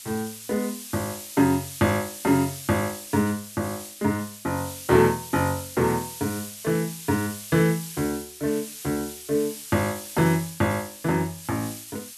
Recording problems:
hiss; slope +5 dB per octave, SNR 11 dB

